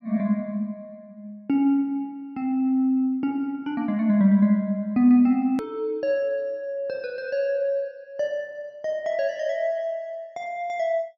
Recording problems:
click at an edit; at 5.5 s

